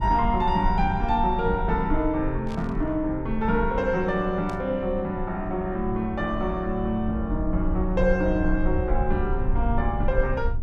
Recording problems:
low-frequency rumble; below 60 Hz, SNR 6 dB
static burst; at 2.5 s and at 4.5 s; peak -14 dB vs average level

